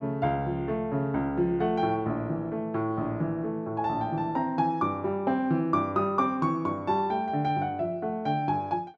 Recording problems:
none

